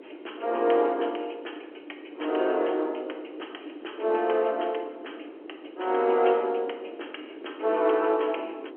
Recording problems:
telephone audio; 280 Hz to 3.3 kHz, G.711
wind on the microphone; below 450 Hz, SNR 17 dB

